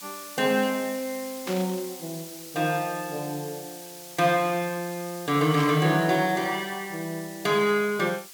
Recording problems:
background hiss; slope +2 dB per octave, SNR 15 dB
burst of static; at 1.5 s and at 5.5 s; peak -5 dB vs average level

